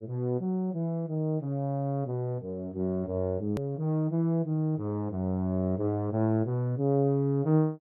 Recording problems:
edit click; at 3.5 s

